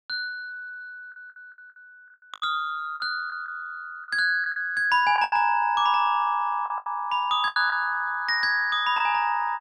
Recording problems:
lost packets; 9% of the sound replaced, filled with the last packet

